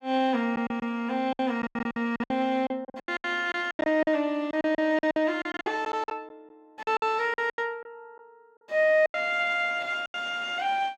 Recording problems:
packet loss; 16% of the sound replaced, filled with silence

